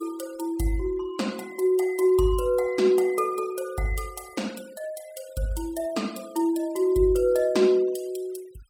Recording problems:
noise reduction artefacts; signal-to-artefact ratio 23 dB

